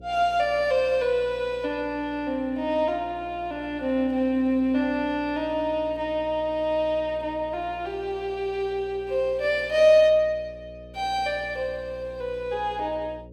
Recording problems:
hum; 60 Hz, harmonics up to 540 Hz, SNR 21 dB

